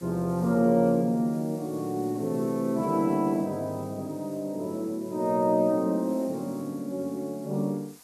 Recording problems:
background hiss; slope -1 dB per octave, SNR 24 dB

